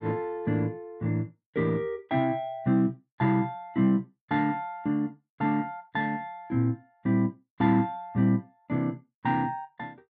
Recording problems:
none

